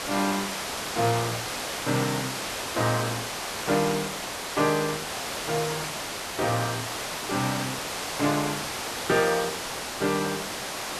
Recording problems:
background hiss; slope -2 dB per octave, SNR 2 dB

